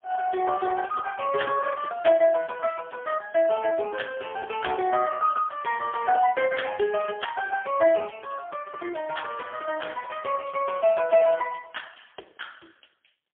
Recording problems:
phone line; 280 Hz to 3 kHz, AMR-NB, then MP3

